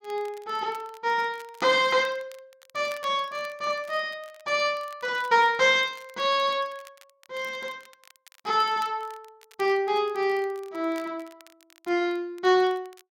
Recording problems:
crackle; vinyl, SNR 27 dB

